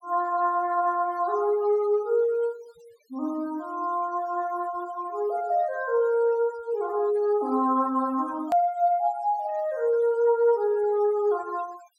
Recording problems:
noise reduction artefacts; signal-to-artefact ratio 27 dB
hard cut with a click; at 8.5 s

